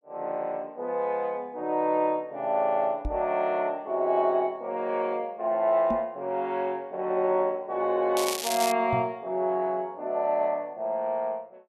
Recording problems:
knock on the microphone; at 3 s, at 6 s and at 9 s; peak -1 dB vs average level
crackle; at 8 s; loose cable, SNR 5 dB

